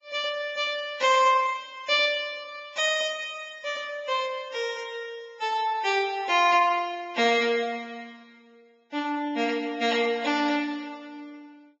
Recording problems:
codec artefacts; Vorbis, log-spectral distance 3 dB, nothing above 6.9 kHz

